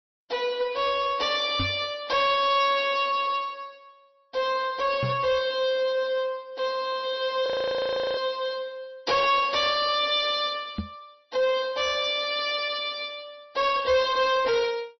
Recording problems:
lossy codec; MP3, log-spectral distance 4 dB, nothing above 5.3 kHz
distortion; soft clipping, signal-to-distortion ratio 11 dB
knock on the microphone; at 1.5 s, at 5 s and at 11 s; peak -1 dB vs average level
audio freezing; at 7.5 s for 0.5 s

